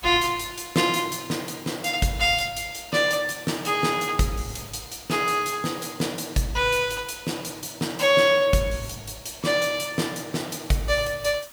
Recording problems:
hiss; slope 0 dB per octave, SNR 21 dB

